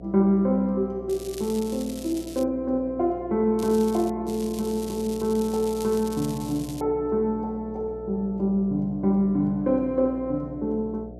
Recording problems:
hum; 60 Hz, harmonics up to 720 Hz, SNR 17 dB
crackling; from 1 to 2.5 s, at 3.5 s and from 4.5 to 7 s; loose cable, SNR 16 dB

